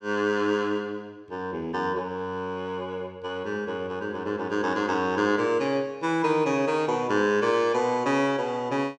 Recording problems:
none

